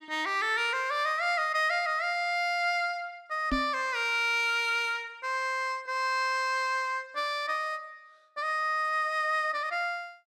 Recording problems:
microphone thump; at 3.5 s; peak +1 dB vs average level

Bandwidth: 14.5 kHz